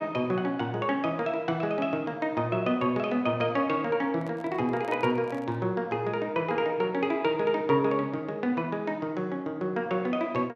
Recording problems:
microphone handling noise; from 4 to 5.5 s; peak -10 dB vs average level

